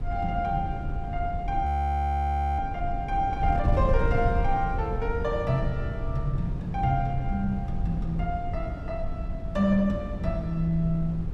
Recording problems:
wind noise; below 100 Hz, SNR 3 dB
audio freezing; at 1.5 s for 1 s

